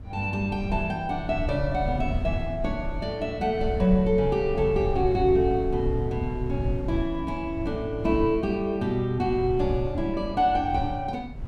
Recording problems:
wind noise; below 100 Hz, SNR 8 dB

